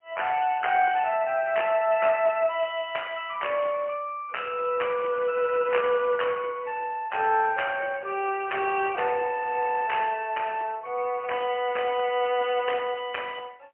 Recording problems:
phone line; 260 Hz to 3.1 kHz, AMR-NB, then MP3

